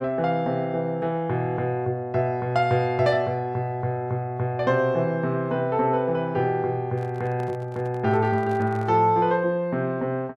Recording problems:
handling noise; from 7 to 9 s; peak -13 dB vs average level

